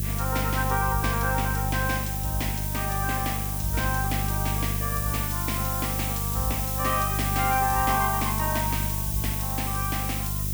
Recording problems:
electrical hum; 50 Hz, harmonics up to 400 Hz, SNR 2 dB
background hiss; slope +4 dB per octave, SNR 1 dB

